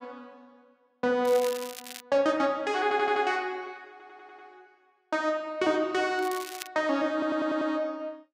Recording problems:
crackle; at 1 s and at 6 s; loose cable, SNR 14 dB
stutter; at 3 s, at 4 s and at 7 s

